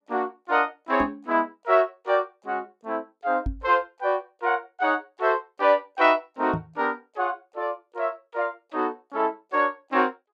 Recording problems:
microphone thump; at 1 s, at 3.5 s and at 6.5 s; peak 0 dB vs average level

